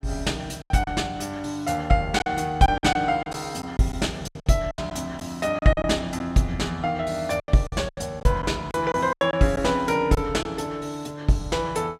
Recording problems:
lost packets; 9% of the sound replaced, filled with silence

